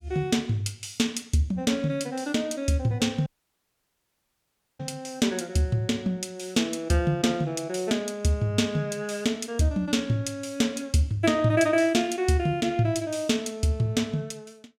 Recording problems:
dropout; at 3.5 s for 1.5 s

